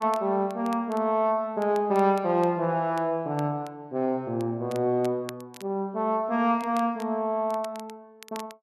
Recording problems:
crackle; vinyl, SNR 23 dB

